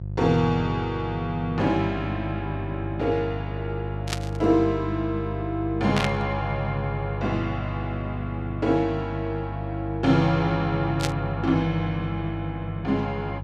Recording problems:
hum; 50 Hz, harmonics up to 500 Hz, SNR 6 dB
burst of static; at 4 s, at 6 s and at 11 s; peak +3 dB vs average level

